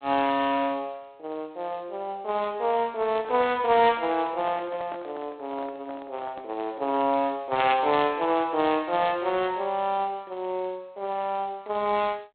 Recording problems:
phone line; 240 Hz to 3.9 kHz, G.726
microphone handling noise; from 3 to 6.5 s; peak -10 dB vs average level

